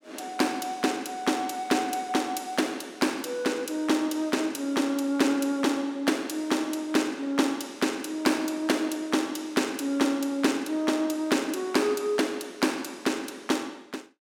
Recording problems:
none

